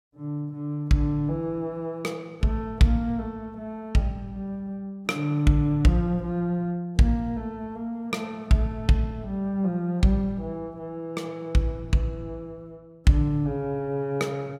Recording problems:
none

